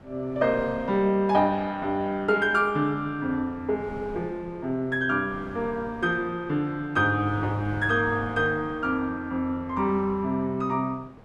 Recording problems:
wind noise; below 690 Hz, SNR 19 dB

